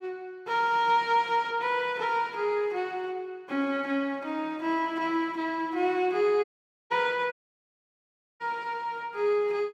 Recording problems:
dropout; at 6.5 s and at 7.5 s for 1 s

